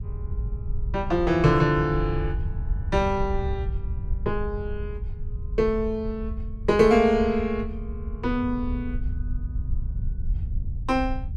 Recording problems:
wind noise; below 80 Hz, SNR 7 dB

